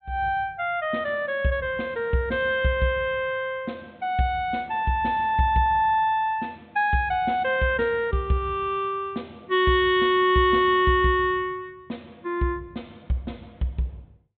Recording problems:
treble missing; nothing above 4 kHz

